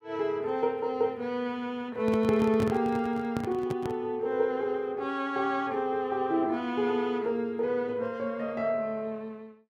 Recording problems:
handling noise; from 2 to 4 s; peak +1 dB vs average level

